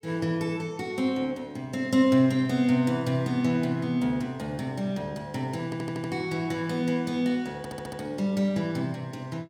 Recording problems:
stutter; at 5.5 s and at 7.5 s

